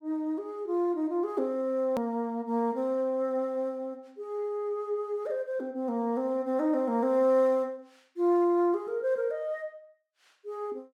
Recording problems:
edit click; at 2 s

